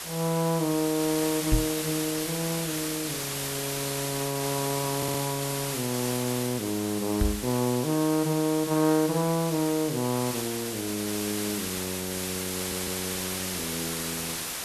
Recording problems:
background hiss; slope 0 dB per octave, SNR 3 dB
knock on the microphone; at 1.5 s and at 7 s; peak +7 dB vs average level
audio stuttering; at 5 s and at 13 s

